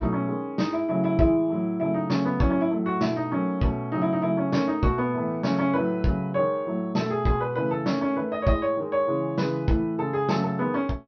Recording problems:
low-pass filter; nothing above 6.1 kHz

